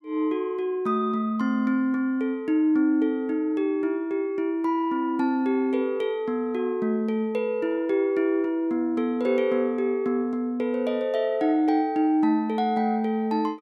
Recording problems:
none

